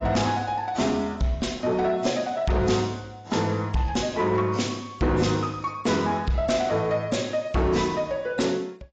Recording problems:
lossy compression; AAC, log-spectral distance 3 dB, nothing above 7.3 kHz
distortion; soft clipping, signal-to-distortion ratio 12 dB

